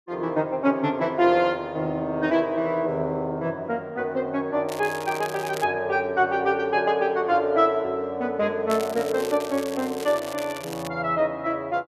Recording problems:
crackling; at 4.5 s and from 8.5 to 11 s; loose cable, SNR 15 dB

